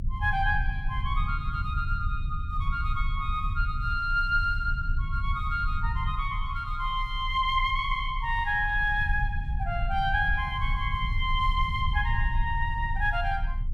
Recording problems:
rumble; below 78 Hz, strongest tone 30 Hz, SNR 3 dB

